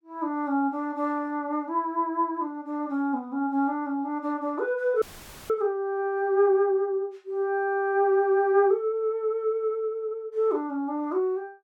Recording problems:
audio cutting out; at 5 s; filled with static

